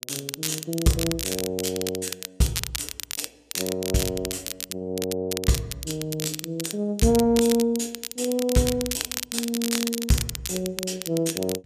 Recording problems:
crackle; vinyl, SNR 5 dB

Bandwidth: 14.5 kHz